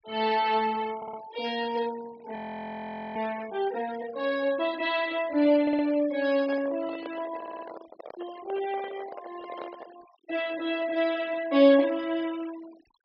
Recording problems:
treble missing; nothing above 5.5 kHz
noise reduction artefacts; signal-to-artefact ratio 21 dB
stutter; at 1 s, at 5.5 s and at 7.5 s
frozen audio; at 2.5 s for 1 s
handling noise; from 6.5 to 10 s; peak -9 dB vs average level

